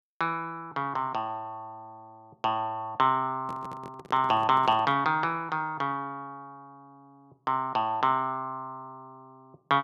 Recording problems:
handling noise; from 3.5 to 5 s; peak -11 dB vs average level

